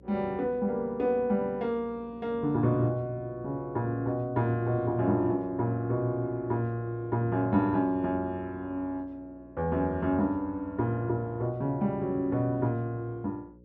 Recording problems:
hum; 60 Hz, harmonics up to 540 Hz, SNR 24 dB

